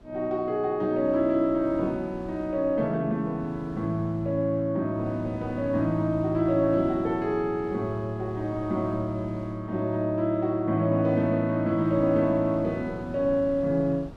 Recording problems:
wind on the microphone; below 390 Hz, SNR 20 dB

